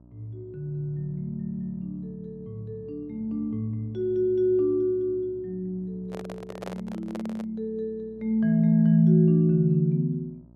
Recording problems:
hum; 60 Hz, harmonics up to 720 Hz, SNR 26 dB
handling noise; from 6 to 7.5 s; peak -7 dB vs average level

